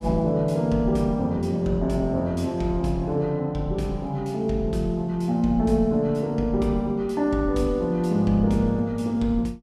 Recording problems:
none

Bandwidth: 14.5 kHz